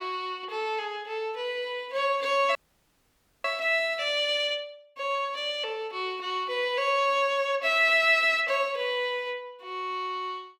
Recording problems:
audio freezing; at 2.5 s for 1 s

